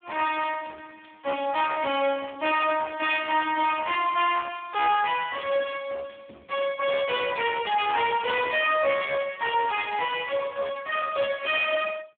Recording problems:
phone line; 280 Hz to 3.4 kHz, Speex
distortion; hard clipping, uneven, signal-to-distortion ratio 11 dB

